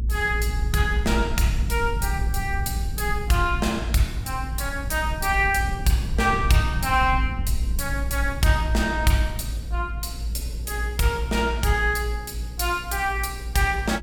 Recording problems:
hum; 60 Hz, harmonics up to 480 Hz, SNR 18 dB
low-frequency rumble; below 64 Hz, strongest tone 56 Hz, SNR 5 dB

